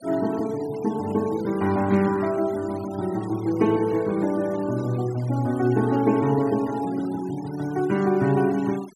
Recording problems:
denoising artefacts; signal-to-artefact ratio 21 dB

